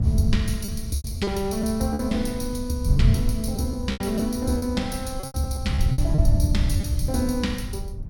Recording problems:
rumble; below 88 Hz, SNR 14 dB
wind on the microphone; below 110 Hz, SNR 0 dB
lost packets; 9% of the sound replaced, filled with repeated pitch periods

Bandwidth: 17 kHz